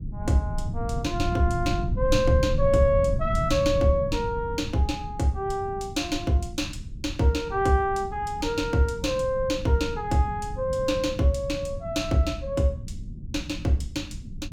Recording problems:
rumble; below 130 Hz, SNR 8 dB

